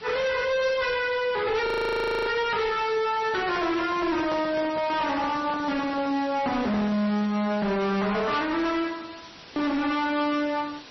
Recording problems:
lossy codec; MP3, then MP3, log-spectral distance 8 dB, nothing above 13.1 kHz
distortion; hard clipping, signal-to-distortion ratio 8 dB
background hiss; slope -1 dB per octave, SNR 18 dB
frozen audio; at 1.5 s for 0.5 s
handling noise; from 3 to 6 s; peak -5 dB vs average level

